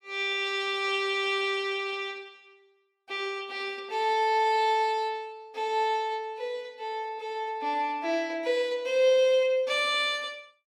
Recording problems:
none

